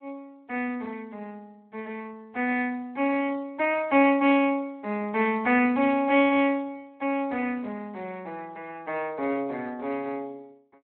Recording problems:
telephone audio; 260 Hz to 3.5 kHz, Speex

